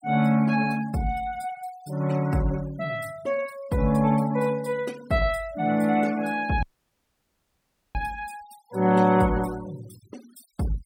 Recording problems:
denoising artefacts; signal-to-artefact ratio 21 dB
audio cutting out; at 6.5 s for 1.5 s

